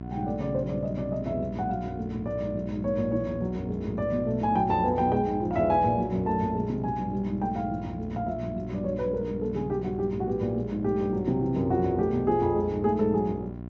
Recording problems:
low-pass filter; nothing above 8 kHz
electrical hum; 60 Hz, harmonics up to 1.1 kHz, SNR 10 dB

